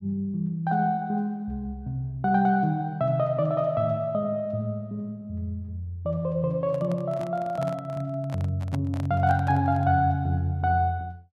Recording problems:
microphone handling noise; from 6.5 to 10 s; peak -6 dB vs average level

